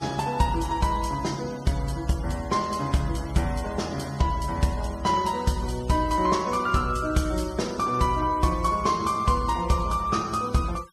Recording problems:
denoising artefacts; signal-to-artefact ratio 19 dB

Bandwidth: 14.5 kHz